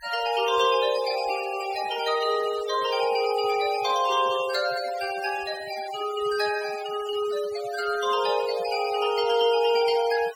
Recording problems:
denoising artefacts; signal-to-artefact ratio 15 dB

